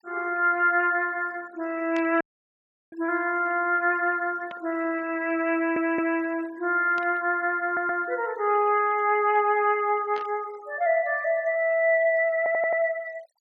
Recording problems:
noise reduction artefacts; signal-to-artefact ratio 24 dB
burst of static; 4 times, first at 2 s; peak -11 dB vs average level
dropout; at 2 s for 0.5 s
audio stuttering; at 5.5 s, at 7.5 s and at 12 s

